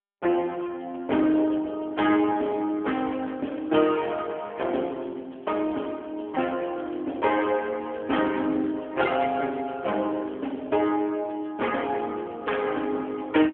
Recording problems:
telephone audio; 240 Hz to 3.3 kHz, AMR-NB

